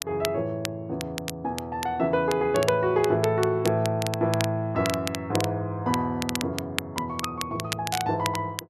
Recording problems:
crackle; vinyl, SNR 9 dB

